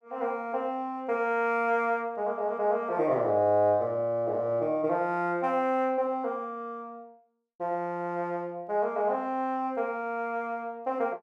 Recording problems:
none

